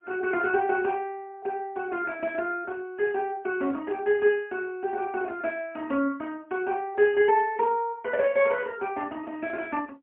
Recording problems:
telephone audio; 240 Hz to 3.3 kHz, AMR-NB, then MP3

